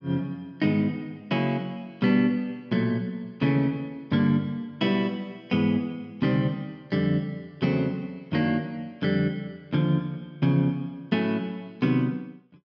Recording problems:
none

